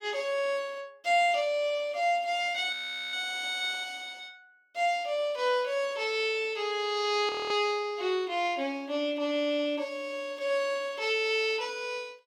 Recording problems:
frozen audio; at 2.5 s and at 7.5 s

